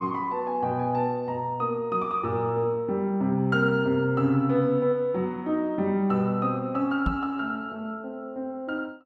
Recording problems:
microphone thump; at 7 s; peak +2 dB vs average level

